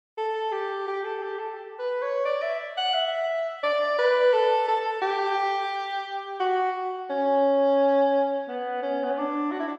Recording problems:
none

